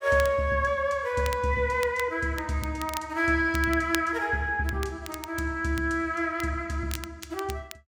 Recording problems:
crackling; vinyl, SNR 14 dB

